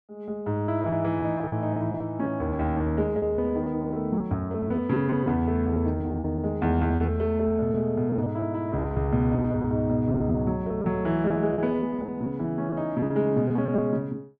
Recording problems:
packet loss; 12% of the sound replaced, filled with repeated pitch periods

